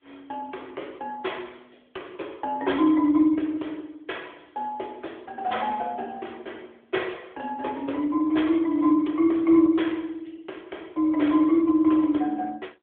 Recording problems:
phone line; 260 Hz to 3.8 kHz, AMR-NB

